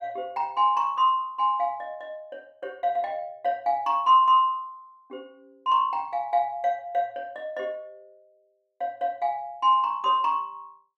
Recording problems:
none

